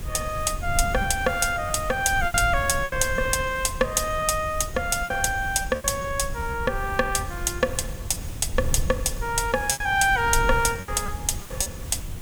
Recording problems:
hiss; slope -3 dB per octave, SNR 18 dB
wind on the microphone; below 94 Hz, SNR 10 dB
lost packets; 7% of the sound replaced, filled with repeated pitch periods

